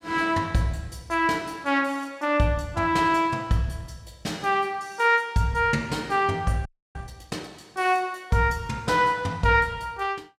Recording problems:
audio freezing; at 6.5 s

